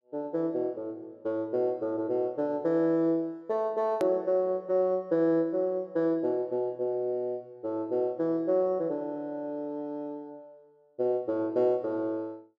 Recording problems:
hard cut with a click; at 4 s

